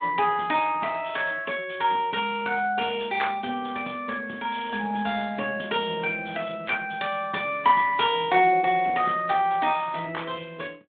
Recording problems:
telephone audio; 190 Hz to 3.6 kHz, Speex

